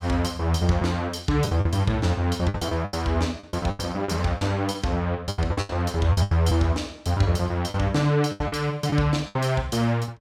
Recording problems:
lost packets; 10% of the sound replaced, filled with the last packet

